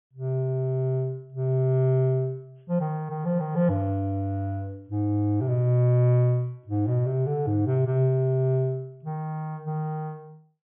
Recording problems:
low-pass filter; nothing above 3.4 kHz

